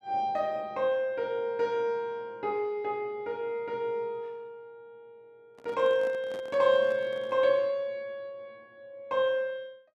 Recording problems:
microphone handling noise; from 5.5 to 7.5 s; peak -11 dB vs average level

